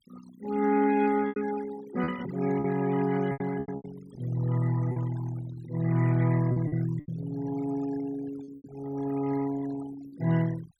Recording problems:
denoising artefacts; signal-to-artefact ratio 16 dB
lost packets; 7% of the sound replaced, filled with repeated pitch periods

